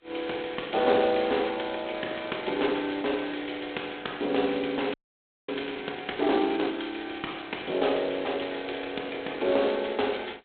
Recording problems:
phone line; 260 Hz to 3.7 kHz, G.726
audio freezing; at 5 s for 0.5 s

